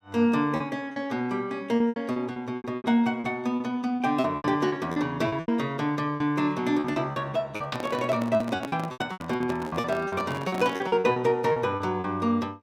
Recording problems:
packet loss; 15% of the sound replaced, filled with repeated pitch periods
handling noise; from 7.5 to 11 s; peak -3 dB vs average level

